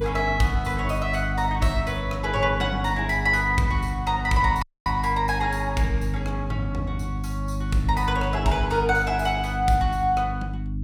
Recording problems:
hum; 50 Hz, harmonics up to 300 Hz, SNR 5 dB
audio cutting out; at 4.5 s

